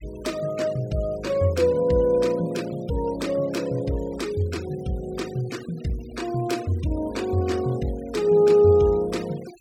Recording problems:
noise reduction artefacts; signal-to-artefact ratio 21 dB

